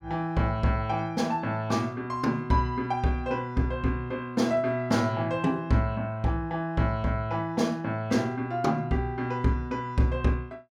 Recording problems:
none

